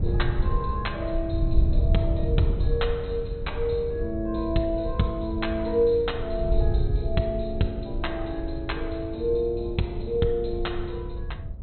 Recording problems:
treble missing; nothing above 4.1 kHz
wind on the microphone; below 86 Hz, SNR 2 dB

